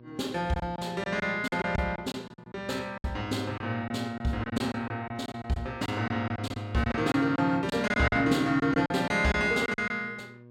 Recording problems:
electrical hum; 60 Hz, harmonics up to 1.1 kHz, SNR 22 dB
lost packets; 11% of the sound replaced, filled with silence

